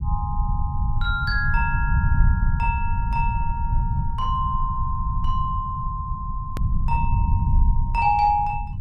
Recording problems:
low-frequency rumble; below 98 Hz, SNR -1 dB
click at an edit; at 6.5 s

